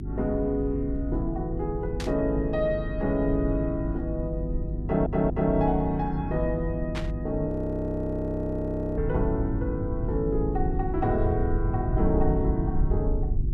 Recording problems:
electrical hum; 50 Hz, harmonics up to 400 Hz, SNR 7 dB
low-frequency rumble; below 80 Hz, SNR 6 dB
burst of static; at 2 s and at 7 s; peak -3 dB vs average level
audio stuttering; at 5 s
frozen audio; at 7.5 s for 1.5 s

